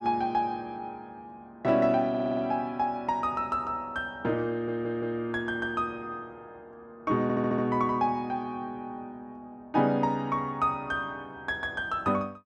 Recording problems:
stutter; at 2 s, at 4.5 s and at 7 s

